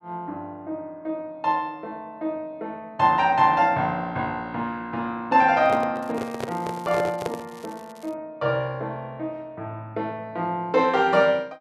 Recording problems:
handling noise; from 5.5 to 7.5 s; peak -1 dB vs average level
crackle; from 6 to 8 s; loose cable, SNR 26 dB

